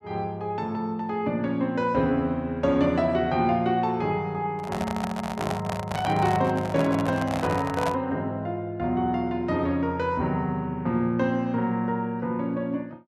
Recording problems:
handling noise; from 4.5 to 8 s; peak +1 dB vs average level

